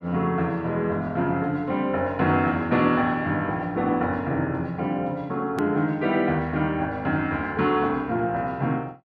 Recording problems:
edit click; at 5.5 s

